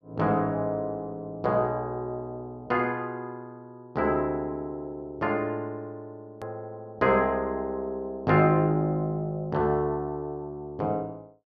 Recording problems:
edit click; at 6.5 s

